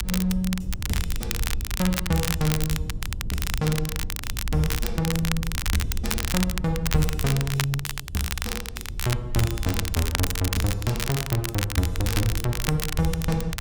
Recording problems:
wind noise; below 76 Hz, SNR 6 dB
crackling; vinyl, SNR 4 dB

